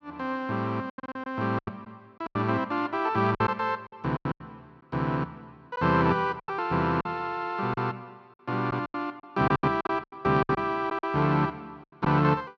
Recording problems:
lost packets; 11% of the sound replaced, filled with silence

